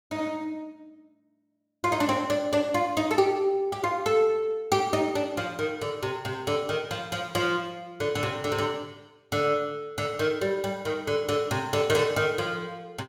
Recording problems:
none

